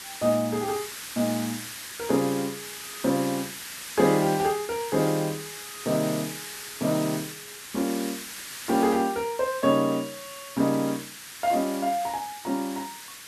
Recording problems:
hiss; SNR 10 dB

